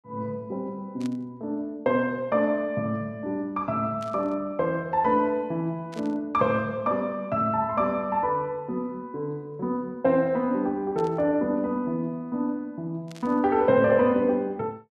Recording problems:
burst of static; 5 times, first at 1 s; peak -14 dB vs average level

